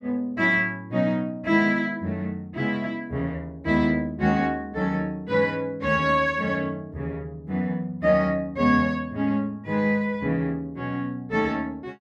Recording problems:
none

